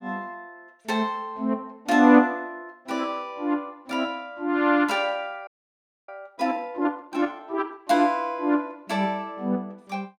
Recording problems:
frozen audio; at 5.5 s for 0.5 s

